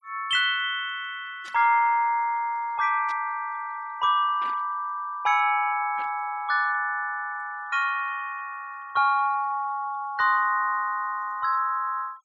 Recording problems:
denoising artefacts; signal-to-artefact ratio 27 dB
burst of static; 4 times, first at 1.5 s; peak -14 dB vs average level

